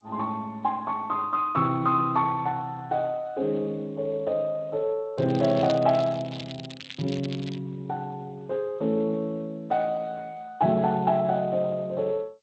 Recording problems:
codec artefacts; Speex, then G.722, log-spectral distance 5 dB
crackling; from 5 to 7.5 s; loose cable, SNR 14 dB

